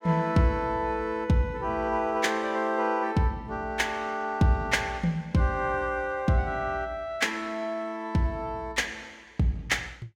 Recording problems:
none

